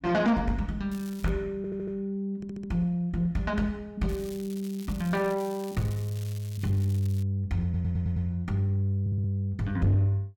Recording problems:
distortion; soft clipping, signal-to-distortion ratio 11 dB
crackle; at 1 s and from 4 to 7 s; loose cable, SNR 19 dB
stutter; 4 times, first at 1.5 s

